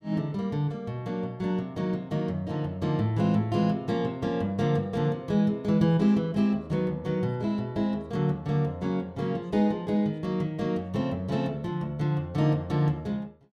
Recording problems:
none

